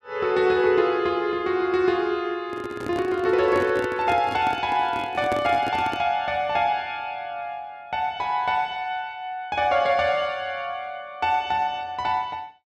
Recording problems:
microphone handling noise; from 2.5 to 6 s; peak -2 dB vs average level

